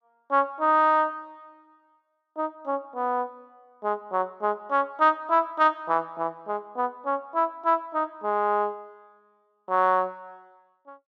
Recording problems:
none

